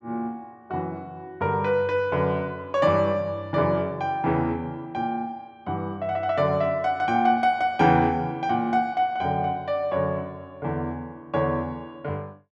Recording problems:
none

